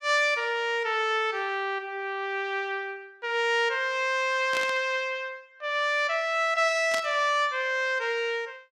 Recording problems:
burst of static; at 4.5 s and at 7 s; peak -3 dB vs average level

